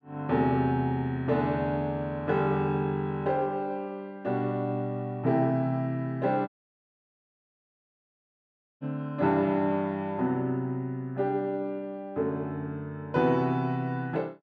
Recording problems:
dropout; at 6.5 s for 2.5 s

